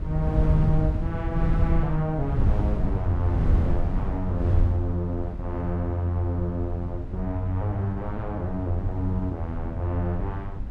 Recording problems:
wind noise; below 98 Hz, SNR 1 dB

